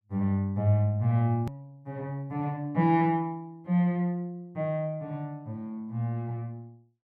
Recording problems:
edit click; at 1.5 s

